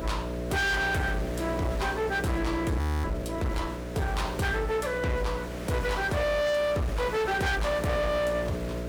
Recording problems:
distorted audio; hard clipping, uneven, signal-to-distortion ratio 8 dB
electrical hum; 60 Hz, harmonics up to 660 Hz, SNR 7 dB
background hiss; slope -5 dB per octave, SNR 14 dB
frozen audio; at 3 s

